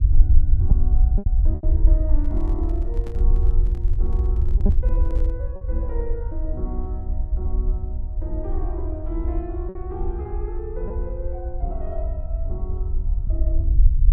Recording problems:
low-frequency rumble; below 60 Hz, SNR -11 dB
lost packets; 3% of the sound replaced, filled with repeated pitch periods
microphone handling noise; from 2 to 5.5 s; peak 0 dB vs average level

